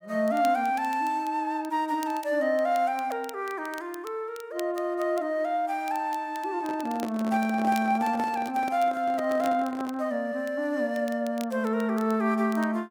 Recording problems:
crackle; vinyl, SNR 22 dB
microphone handling noise; from 6.5 to 10 s; peak -4 dB vs average level

